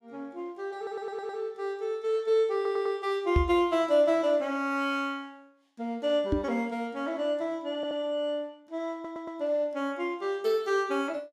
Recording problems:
stutter; 4 times, first at 1 s
microphone thump; at 3.5 s and at 6.5 s; peak +7 dB vs average level

